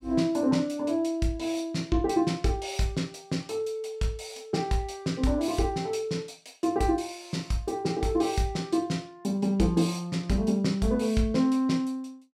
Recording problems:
none

